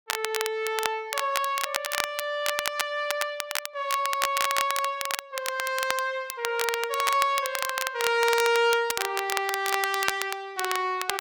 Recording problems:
crackle; vinyl, SNR 4 dB

